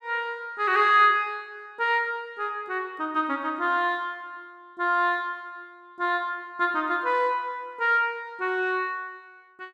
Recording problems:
none

